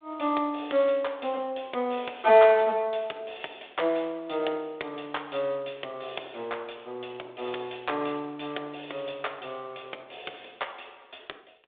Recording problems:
telephone audio; 340 Hz to 3.7 kHz, G.726

